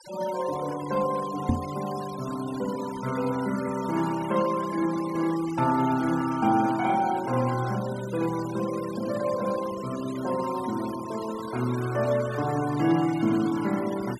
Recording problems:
noise reduction artefacts; signal-to-artefact ratio 15 dB
microphone thump; at 1.5 s; peak +7 dB vs average level

